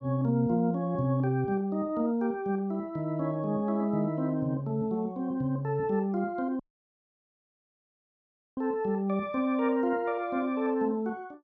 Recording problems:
dropout; at 6.5 s for 2 s

